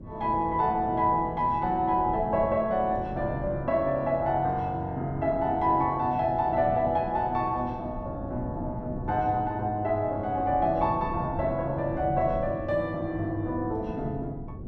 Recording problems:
wind on the microphone; below 240 Hz, SNR 12 dB

